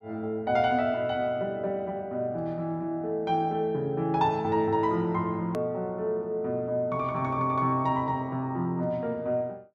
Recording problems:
hard cut with a click; at 5.5 s

